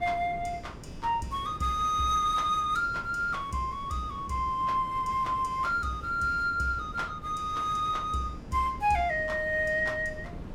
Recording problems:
wind noise; below 310 Hz, SNR 15 dB

